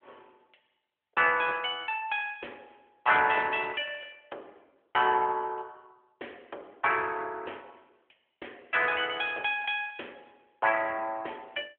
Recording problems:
phone line; 320 Hz to 3.5 kHz, AMR-NB

